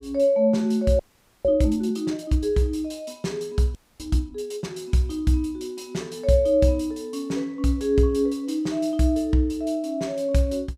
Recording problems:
frozen audio; at 1 s and at 4 s

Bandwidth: 15.5 kHz